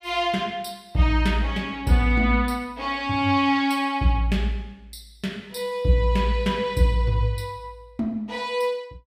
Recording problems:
none

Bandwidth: 15 kHz